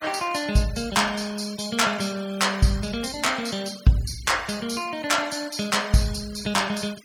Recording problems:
noise reduction artefacts; signal-to-artefact ratio 18 dB

